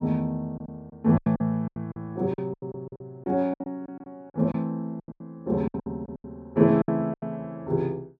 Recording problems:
packet loss; 16% of the sound replaced, filled with silence

